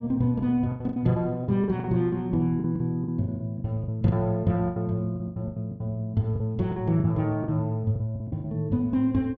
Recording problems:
packet loss; 15% of the sound replaced, filled with the last packet

